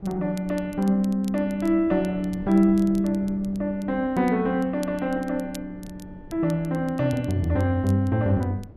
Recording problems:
wind noise; below 290 Hz, SNR 21 dB
crackle; vinyl, SNR 26 dB

